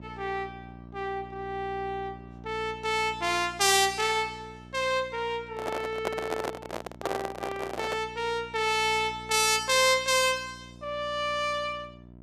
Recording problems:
hum; 60 Hz, harmonics up to 1 kHz, SNR 20 dB
microphone handling noise; from 5.5 to 8 s; peak +1 dB vs average level

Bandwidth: 14.5 kHz